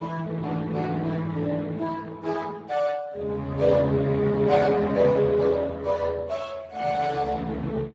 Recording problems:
codec artefacts; Speex, log-spectral distance 4 dB

